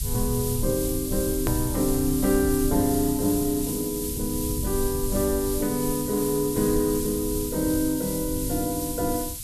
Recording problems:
hiss; SNR 6 dB
low-frequency rumble; below 94 Hz, SNR 9 dB
hard cut with a click; at 1.5 s

